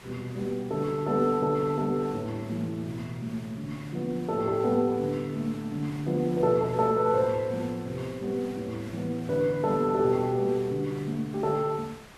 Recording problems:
background hiss; SNR 20 dB

